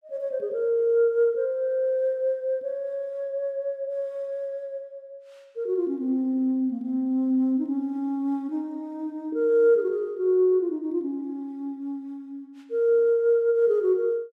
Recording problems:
none

